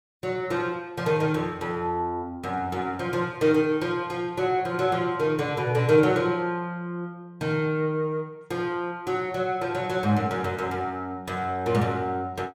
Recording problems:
none

